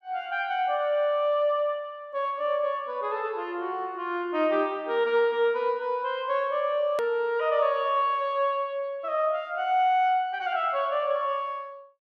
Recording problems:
hard cut with a click; at 7 s

